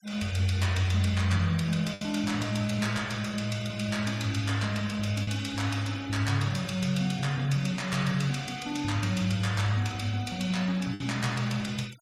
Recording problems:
noise reduction artefacts; signal-to-artefact ratio 21 dB
lost packets; 1.5% of the sound replaced, filled with the last packet

